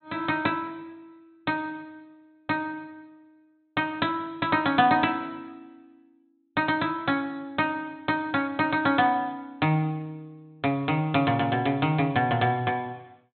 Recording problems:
treble missing; nothing above 4 kHz

